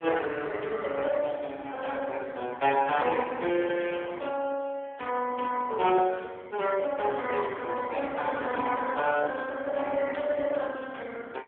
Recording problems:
phone line; 300 Hz to 3.4 kHz, AMR-NB

